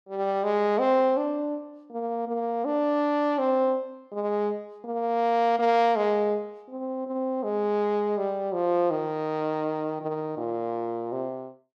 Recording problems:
none

